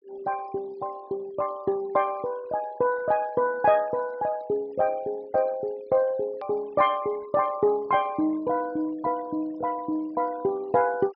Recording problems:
treble cut off; nothing above 5.5 kHz
denoising artefacts; signal-to-artefact ratio 25 dB
click at an edit; at 6.5 s

